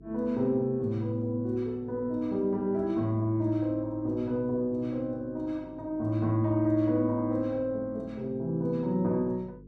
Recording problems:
electrical hum; 50 Hz, harmonics up to 450 Hz, SNR 24 dB

